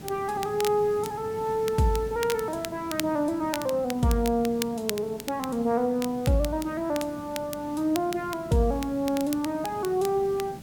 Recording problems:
background hiss; SNR 16 dB
crackle; vinyl, SNR 13 dB

